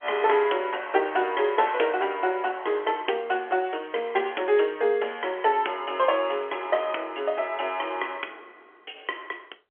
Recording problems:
phone line; 320 Hz to 3.3 kHz, G.711

